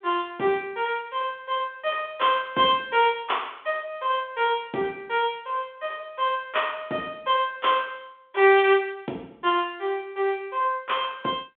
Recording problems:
telephone audio; 220 Hz to 3.6 kHz, G.726

